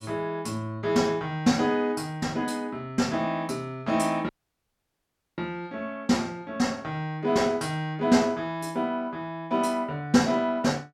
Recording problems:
audio cutting out; at 4.5 s for 1 s

